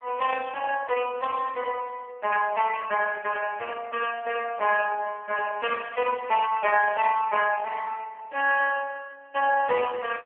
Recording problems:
telephone audio; 300 Hz to 3.3 kHz, AMR-NB

